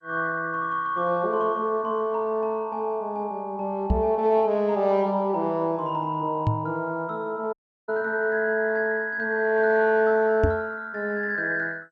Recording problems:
lossy compression; MP2, log-spectral distance 2 dB
microphone thump; at 4 s, at 6.5 s and at 10 s; peak +5 dB vs average level
audio cutting out; at 7.5 s

